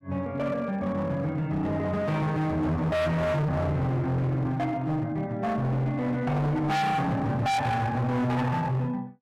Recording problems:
distortion; hard clipping, signal-to-distortion ratio 6 dB

